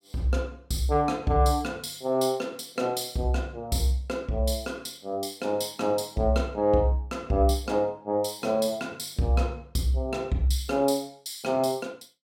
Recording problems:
none

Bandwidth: 16 kHz